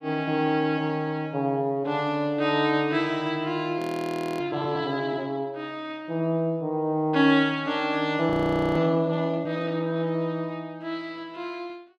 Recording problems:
frozen audio; at 4 s for 0.5 s and at 8.5 s

